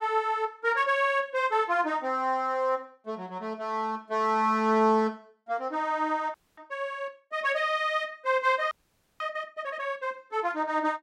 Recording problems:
frozen audio; at 6.5 s and at 8.5 s

